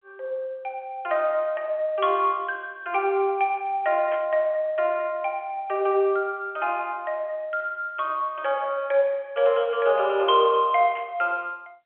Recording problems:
telephone audio; 300 Hz to 3.3 kHz, G.711
burst of static; at 4 s and at 11 s; peak -10 dB vs average level

